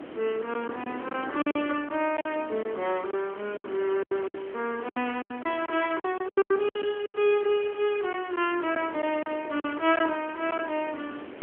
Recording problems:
phone line; 260 Hz to 3.2 kHz, AMR-NB
background hiss; SNR 19 dB
wind noise; below 530 Hz, SNR 15 dB
packet loss; 11% of the sound replaced, filled with silence

